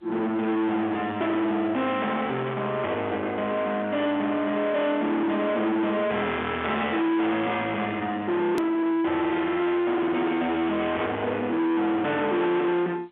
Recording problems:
phone line; 240 Hz to 3.6 kHz, G.711
distorted audio; soft clipping, signal-to-distortion ratio 7 dB
click at an edit; at 8.5 s

